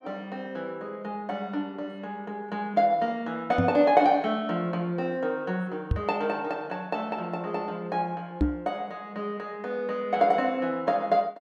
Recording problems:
microphone thump; at 3.5 s, at 6 s and at 8.5 s; peak +7 dB vs average level

